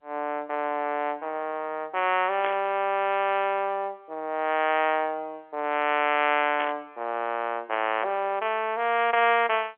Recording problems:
telephone audio; 300 Hz to 3.3 kHz, G.711
static burst; at 2.5 s and at 6.5 s; peak -3 dB vs average level

